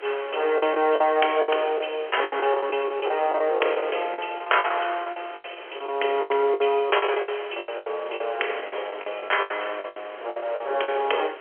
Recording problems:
phone line; 340 Hz to 3.3 kHz, G.711
background hiss; SNR 18 dB
lost packets; 17% of the sound replaced, filled with the last packet

